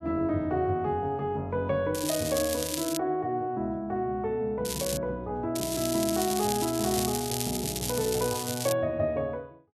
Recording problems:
crackling; from 2 to 3 s, at 4.5 s and from 5.5 to 8.5 s; loose cable, SNR 4 dB

